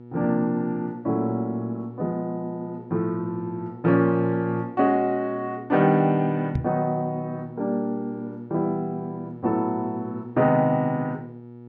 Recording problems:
hum; 60 Hz, harmonics up to 960 Hz, SNR 16 dB
microphone thump; at 6.5 s; peak +3 dB vs average level

